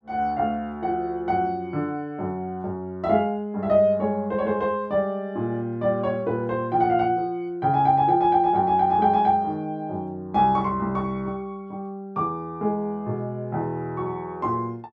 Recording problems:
none

